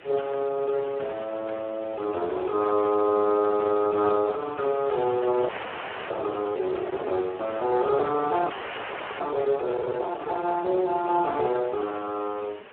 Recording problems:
telephone audio; 320 Hz to 3.7 kHz, Speex
distorted audio; hard clipping, uneven, signal-to-distortion ratio 15 dB
hiss; SNR 21 dB
wind on the microphone; below 860 Hz, SNR 21 dB
audio freezing; at 5.5 s for 0.5 s and at 8.5 s for 0.5 s

